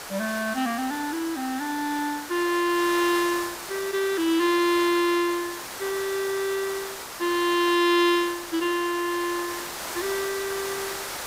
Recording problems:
background hiss; slope -2 dB per octave, SNR 9 dB

